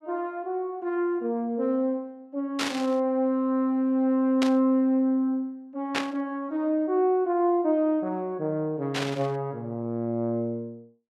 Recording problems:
burst of static; 4 times, first at 2.5 s; peak +2 dB vs average level

